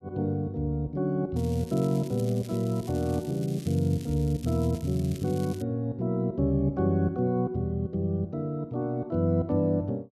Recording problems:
crackle; from 1.5 to 5.5 s; loose cable, SNR 21 dB

